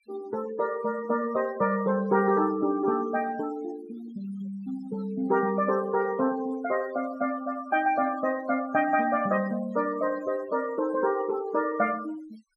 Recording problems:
denoising artefacts; signal-to-artefact ratio 17 dB

